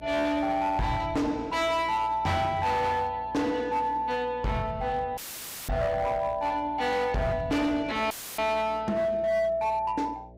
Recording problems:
distorted audio; hard clipping, signal-to-distortion ratio 10 dB
hum; 60 Hz, harmonics up to 660 Hz, SNR 23 dB
dropout; at 5 s for 0.5 s and at 8 s; filled with static

